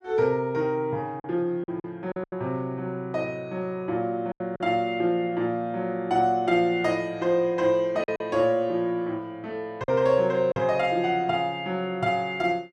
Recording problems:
lost packets; 4% of the sound replaced, filled with silence

